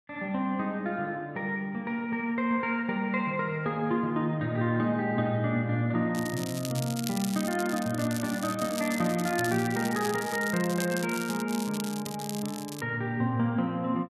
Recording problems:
crackle; from 6 to 13 s; loose cable, SNR 10 dB

